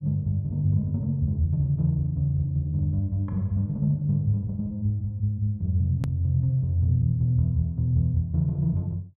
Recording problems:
hard cut with a click; at 6 s

